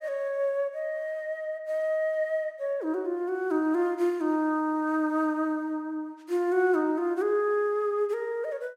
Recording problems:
none

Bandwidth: 16 kHz